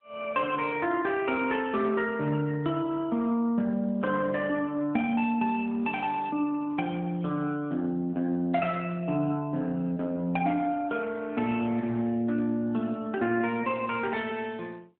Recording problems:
phone line; 170 Hz to 3.5 kHz, AMR-NB

